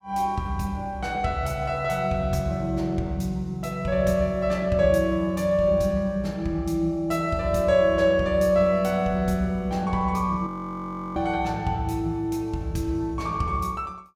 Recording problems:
audio freezing; at 10 s for 0.5 s

